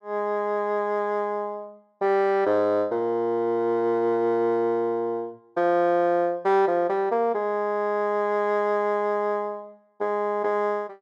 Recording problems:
none

